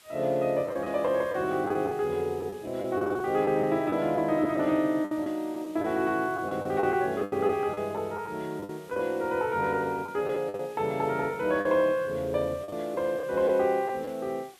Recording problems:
background hiss; slope +1 dB per octave, SNR 26 dB
packet loss; 8% of the sound replaced, filled with the last packet

